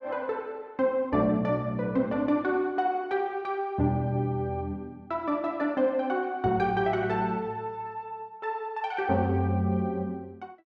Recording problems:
none

